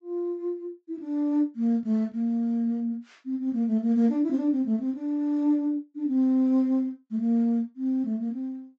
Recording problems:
treble missing; nothing above 8 kHz

